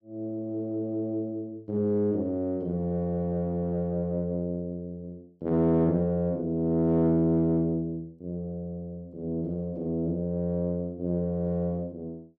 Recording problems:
none

